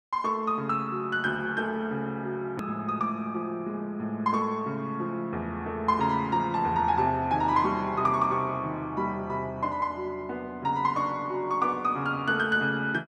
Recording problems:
click at an edit; at 2.5 s

